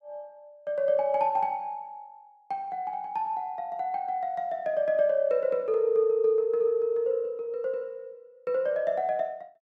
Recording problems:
none

